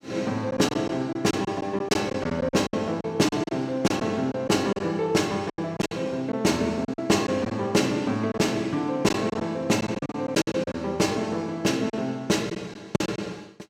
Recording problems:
packet loss; 9% of the sound replaced, filled with silence

